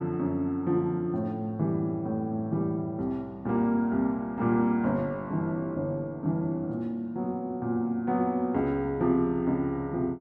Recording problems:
none

